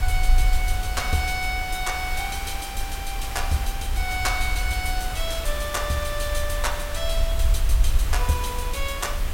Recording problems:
hum; 60 Hz, harmonics up to 720 Hz, SNR 19 dB
hiss; slope -2 dB per octave, SNR 7 dB
rumble; below 56 Hz, SNR 1 dB

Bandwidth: 16 kHz